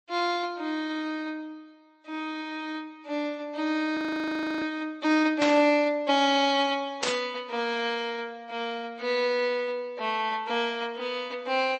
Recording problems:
lossy compression; MP3, log-spectral distance 2 dB
audio freezing; at 4 s for 0.5 s
burst of static; at 5.5 s and at 7 s; peak +4 dB vs average level

